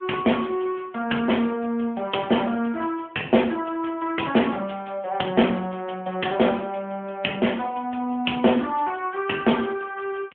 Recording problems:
telephone audio; 170 Hz to 3.2 kHz, AMR-NB

